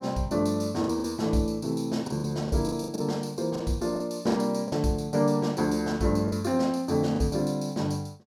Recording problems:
packet loss; 7% of the sound replaced, filled with the last packet

